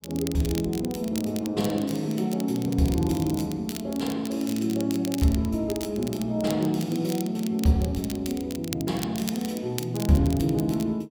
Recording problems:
crackle; vinyl, SNR 13 dB

